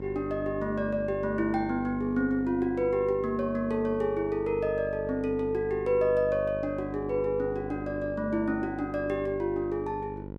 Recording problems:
electrical hum; 50 Hz, harmonics up to 1 kHz, SNR 11 dB

